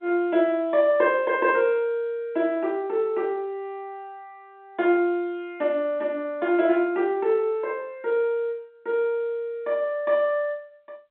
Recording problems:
telephone audio; 220 Hz to 3.6 kHz, G.711

